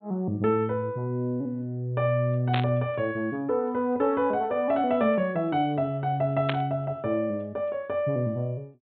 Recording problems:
treble missing; nothing above 4 kHz
burst of static; at 2.5 s and at 6.5 s; peak +1 dB vs average level

